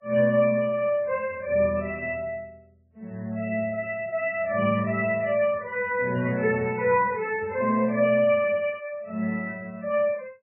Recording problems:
codec artefacts; Vorbis, then MP3, log-spectral distance 2 dB, nothing above 2.4 kHz

